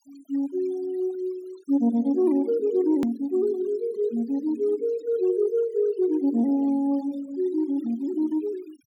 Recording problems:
denoising artefacts; signal-to-artefact ratio 25 dB
click at an edit; at 3 s

